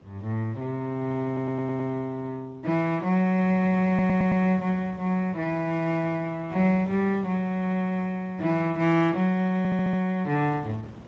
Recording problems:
lossy codec; Speex, log-spectral distance 2 dB
wind on the microphone; below 480 Hz, SNR 21 dB
audio stuttering; at 1.5 s, at 4 s and at 9.5 s

